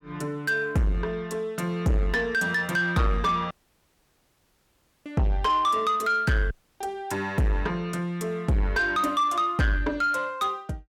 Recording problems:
distorted audio; soft clipping, signal-to-distortion ratio 7 dB
audio cutting out; at 3.5 s for 1.5 s and at 6.5 s

